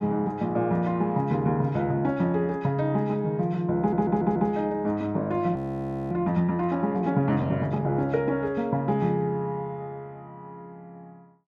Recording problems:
stutter; at 4 s
audio freezing; at 5.5 s for 0.5 s

